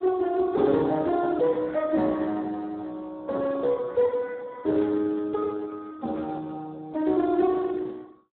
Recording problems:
phone line; 240 Hz to 2 kHz, Speex

